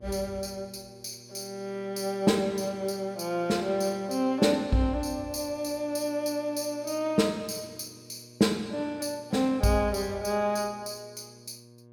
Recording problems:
electrical hum; 60 Hz, harmonics up to 1.1 kHz, SNR 24 dB

